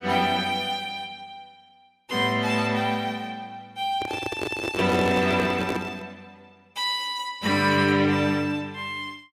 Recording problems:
microphone handling noise; from 4 to 6 s; peak +1 dB vs average level

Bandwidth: 15.5 kHz